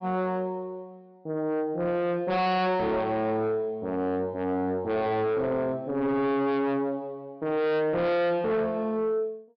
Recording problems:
treble cut off; nothing above 5.5 kHz
distorted audio; soft clipping, signal-to-distortion ratio 6 dB

